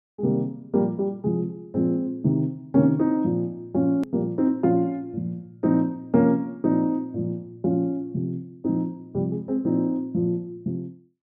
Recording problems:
hard cut with a click; at 4 s

